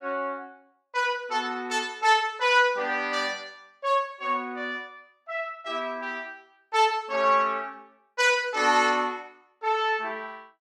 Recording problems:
none

